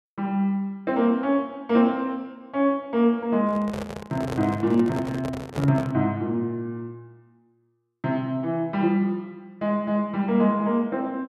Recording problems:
handling noise; from 3.5 to 6 s; peak -4 dB vs average level

